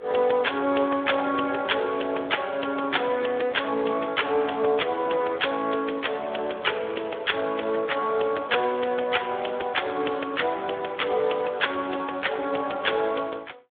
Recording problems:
telephone audio; 340 Hz to 3.5 kHz, Speex

